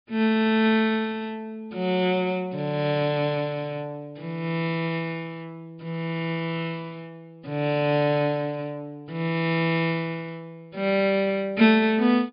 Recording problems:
low-pass filter; nothing above 5 kHz

